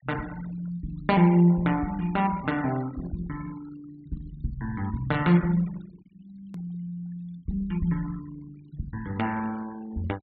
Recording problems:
treble cut off; nothing above 4.7 kHz
denoising artefacts; signal-to-artefact ratio 21 dB
edit click; at 6.5 s

